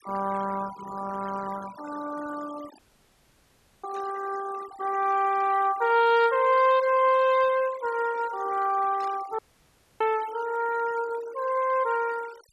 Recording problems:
denoising artefacts; signal-to-artefact ratio 18 dB
audio cutting out; at 3 s for 1 s and at 9.5 s for 0.5 s
burst of static; at 4 s and at 9 s; peak -18 dB vs average level

